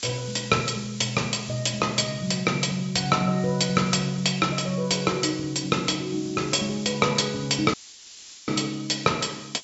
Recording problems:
treble missing; nothing above 8 kHz
hiss; SNR 17 dB
dropout; at 7.5 s for 0.5 s

